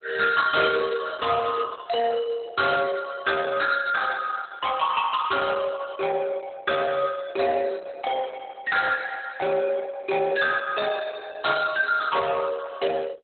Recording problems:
lossy codec; Opus, log-spectral distance 4 dB, nothing above 4.1 kHz
distortion; soft clipping, signal-to-distortion ratio 11 dB

